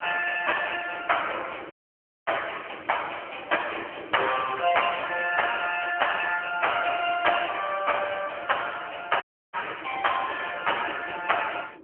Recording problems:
telephone audio; 300 Hz to 3.1 kHz, AMR-NB
wind noise; below 490 Hz, SNR 18 dB
dropout; at 1.5 s for 0.5 s and at 9 s

